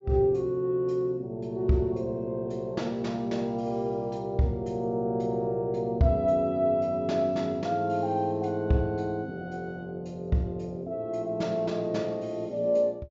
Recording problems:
treble missing; nothing above 7.4 kHz

